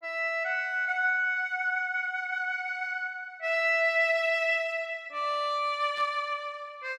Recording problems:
burst of static; at 6 s; peak -17 dB vs average level

